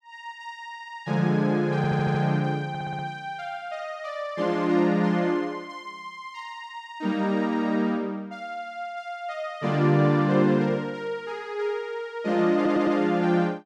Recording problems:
audio stuttering; at 2 s, at 2.5 s and at 13 s

